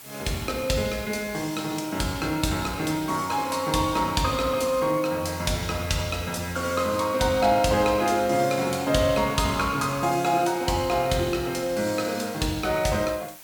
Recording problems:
hiss; slope -1 dB per octave, SNR 18 dB

